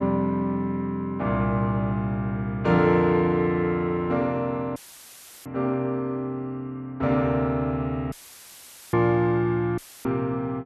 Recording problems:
audio cutting out; at 5 s for 0.5 s, at 8 s for 1 s and at 10 s; filled with static

